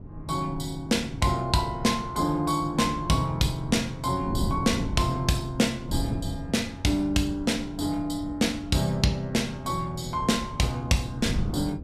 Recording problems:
wind on the microphone; below 210 Hz, SNR 10 dB

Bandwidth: 15 kHz